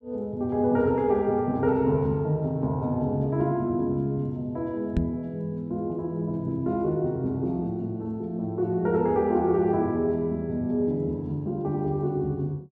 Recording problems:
microphone thump; at 5 s; peak +4 dB vs average level

